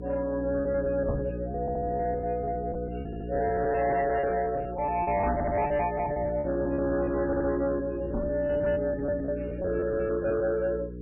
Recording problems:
lossy compression; MP3, log-spectral distance 2 dB, nothing above 2.4 kHz
distortion; soft clipping, signal-to-distortion ratio 11 dB
electrical hum; 60 Hz, harmonics up to 480 Hz, SNR 8 dB
packet loss; 14% of the sound replaced, filled with repeated pitch periods
microphone bump; at 1 s, at 5.5 s and at 8 s; peak +1 dB vs average level
stutter; 4 times, first at 1.5 s

